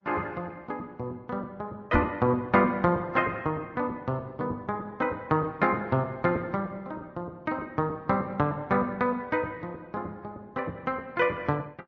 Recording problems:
lossy compression; Opus, then MP3, log-spectral distance 2 dB, nothing above 6 kHz
knock on the microphone; at 2 s; peak +5 dB vs average level

